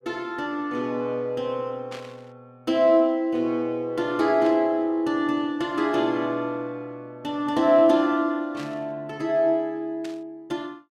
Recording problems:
static burst; 4 times, first at 2 s; peak -12 dB vs average level

